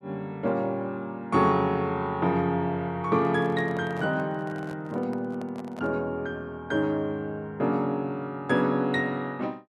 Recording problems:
microphone handling noise; from 3 to 6 s; peak -10 dB vs average level

